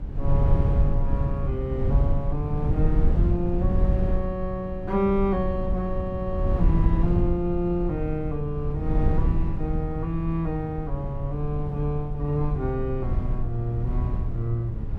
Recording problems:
wind noise; below 94 Hz, SNR -1 dB

